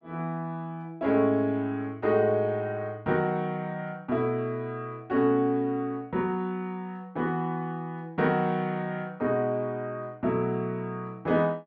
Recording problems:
none

